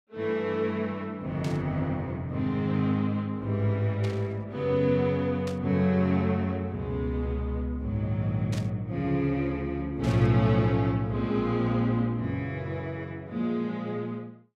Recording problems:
static burst; 5 times, first at 1.5 s; peak -9 dB vs average level

